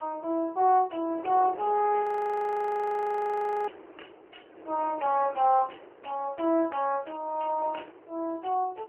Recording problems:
phone line; 280 Hz to 2.4 kHz, AMR-NB
wind on the microphone; below 800 Hz, SNR 20 dB
frozen audio; at 2 s for 1.5 s

